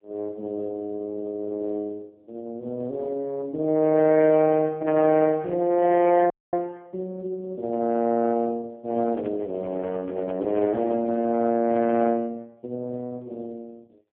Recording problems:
telephone audio; 170 Hz to 3.3 kHz, AMR-NB
audio cutting out; at 6.5 s
handling noise; from 9 to 12 s; peak -12 dB vs average level

